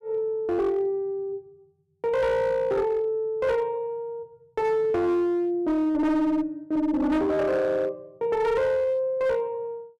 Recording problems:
distortion; hard clipping, uneven, signal-to-distortion ratio 11 dB

